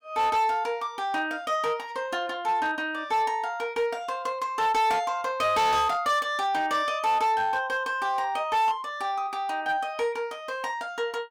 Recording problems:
distorted audio; hard clipping, signal-to-distortion ratio 11 dB

